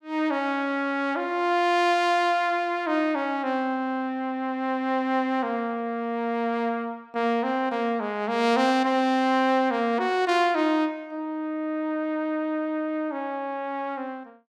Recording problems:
none

